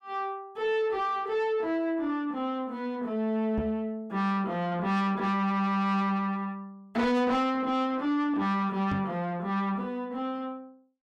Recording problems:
distortion; soft clipping, signal-to-distortion ratio 11 dB
microphone thump; at 3.5 s and at 9 s; peak +2 dB vs average level

